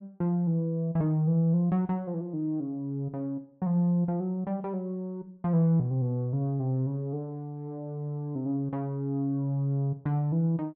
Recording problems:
none

